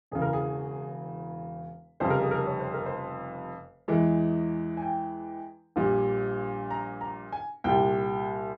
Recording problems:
none

